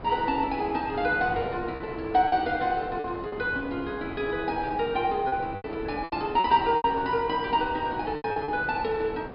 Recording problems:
treble cut off; nothing above 5.5 kHz
wind on the microphone; below 770 Hz, SNR 13 dB
lost packets; 7% of the sound replaced, filled with repeated pitch periods

